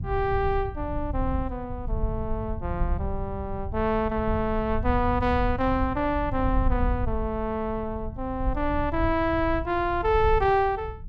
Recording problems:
low-frequency rumble; below 86 Hz, SNR 6 dB

